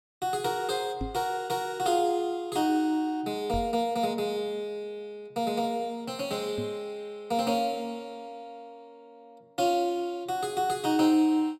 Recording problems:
microphone bump; at 1 s, at 3.5 s and at 6.5 s; peak -1 dB vs average level

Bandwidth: 16 kHz